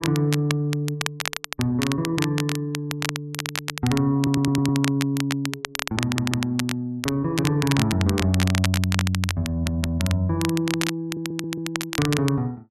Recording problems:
crackling; vinyl, SNR 6 dB
audio stuttering; 4 times, first at 4 s

